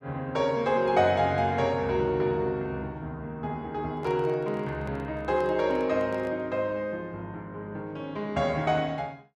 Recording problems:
handling noise; from 4 to 6.5 s; peak -10 dB vs average level

